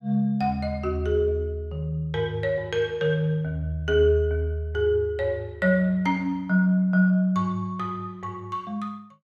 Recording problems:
none

